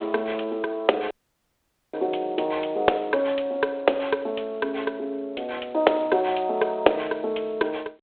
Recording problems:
phone line; 340 Hz to 3.8 kHz, G.726
dropout; at 1 s for 1 s

